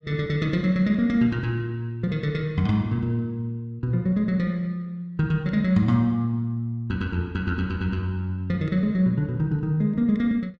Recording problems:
none

